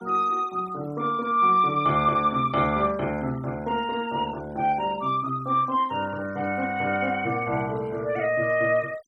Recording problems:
noise reduction artefacts; signal-to-artefact ratio 24 dB

